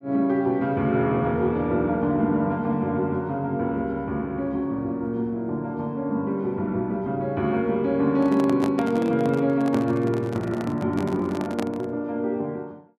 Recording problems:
handling noise; from 8 to 12 s; peak -2 dB vs average level

